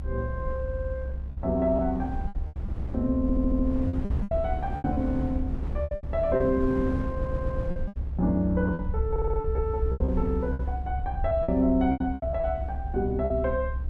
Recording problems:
electrical hum; 50 Hz, harmonics up to 850 Hz, SNR 21 dB
rumble; below 68 Hz, SNR 5 dB
wind on the microphone; below 270 Hz, SNR 11 dB
packet loss; 11% of the sound replaced, filled with repeated pitch periods
audio stuttering; 4 times, first at 0.5 s

